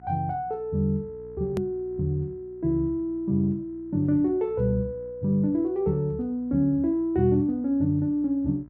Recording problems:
hum; 60 Hz, harmonics up to 1 kHz, SNR 24 dB
click at an edit; at 1.5 s

